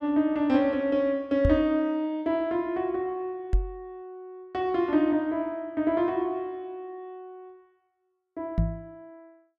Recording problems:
microphone thump; at 1.5 s, at 3.5 s and at 8.5 s; peak +5 dB vs average level

